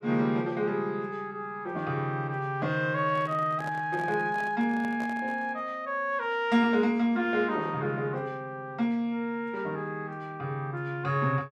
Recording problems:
microphone handling noise; from 3 to 5.5 s; peak -9 dB vs average level

